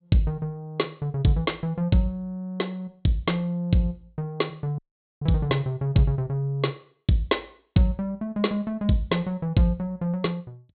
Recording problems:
treble missing; nothing above 4.3 kHz
dropout; at 5 s

